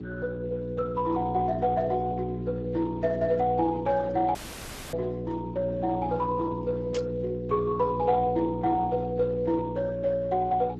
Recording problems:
lossy codec; Speex, log-spectral distance 2 dB
hum; 60 Hz, harmonics up to 420 Hz, SNR 8 dB
dropout; at 4.5 s for 0.5 s
burst of static; at 7 s; peak -5 dB vs average level

